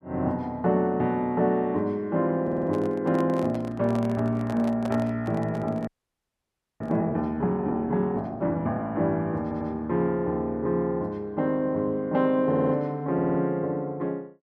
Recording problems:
stutter; 4 times, first at 2.5 s
microphone handling noise; from 2.5 to 7 s; peak -6 dB vs average level
frozen audio; at 6 s for 1 s

